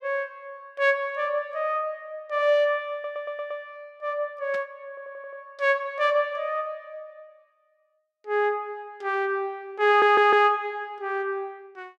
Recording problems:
stutter; at 3 s, at 5 s and at 10 s
static burst; at 4.5 s; peak -13 dB vs average level

